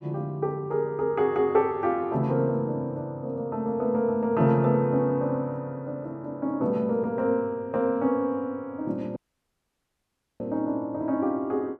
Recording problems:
dropout; at 9 s for 1 s

